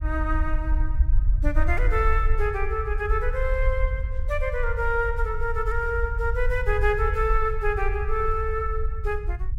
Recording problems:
rumble; below 60 Hz, SNR 1 dB

